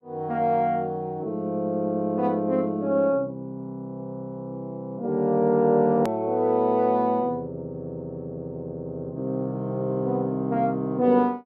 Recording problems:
hard cut with a click; at 6 s

